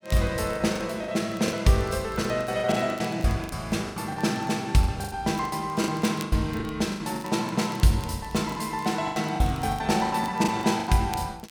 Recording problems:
crackling; vinyl, SNR 23 dB
lost packets; 15% of the sound replaced, filled with the last packet

